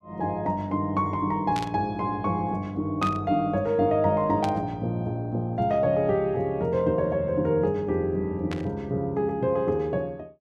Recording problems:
static burst; 4 times, first at 1.5 s; peak -5 dB vs average level

